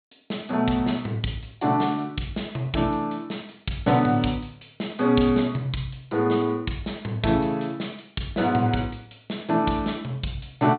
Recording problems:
treble missing; nothing above 4.2 kHz

